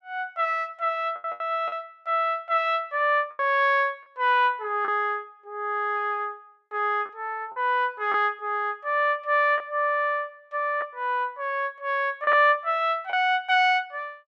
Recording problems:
lost packets; 4% of the sound replaced, filled with the last packet

